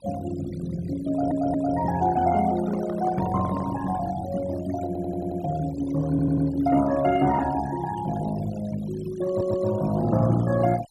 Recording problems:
noise reduction artefacts; signal-to-artefact ratio 17 dB
audio stuttering; 4 times, first at 1 s
microphone handling noise; from 2.5 to 4 s; peak -6 dB vs average level

